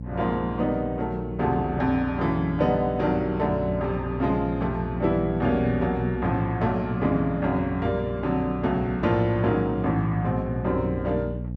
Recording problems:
hum; 60 Hz, harmonics up to 540 Hz, SNR 9 dB

